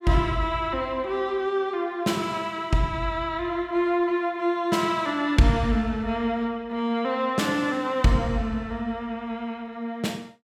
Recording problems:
none

